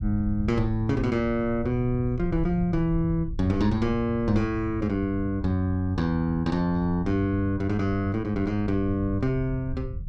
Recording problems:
rumble; below 96 Hz, SNR 11 dB

